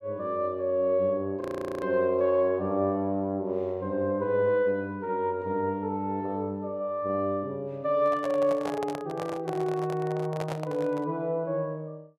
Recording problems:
audio freezing; at 1.5 s
handling noise; from 8 to 11 s; peak -4 dB vs average level

